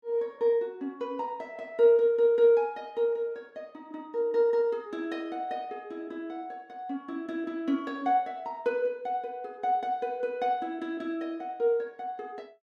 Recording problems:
none

